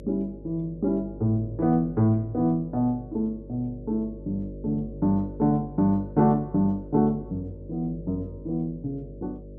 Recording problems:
hum; 50 Hz, harmonics up to 600 Hz, SNR 15 dB

